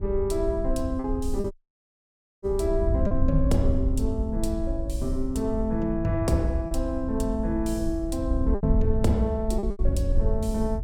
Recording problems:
wind noise; below 74 Hz, SNR 2 dB
lost packets; 4% of the sound replaced, filled with repeated pitch periods
dropout; at 1.5 s for 1 s

